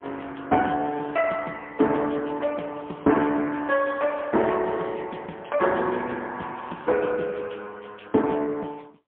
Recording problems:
telephone audio; 220 Hz to 3.4 kHz, AMR-NB, then MP3

